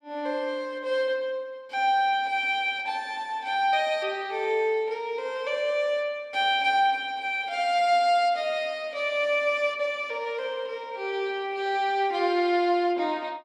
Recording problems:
none

